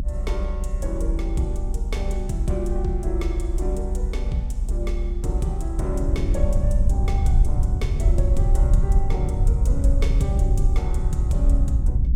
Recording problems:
rumble; below 62 Hz, strongest tone 36 Hz, SNR -6 dB

